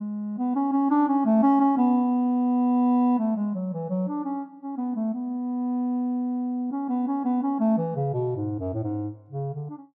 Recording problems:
none

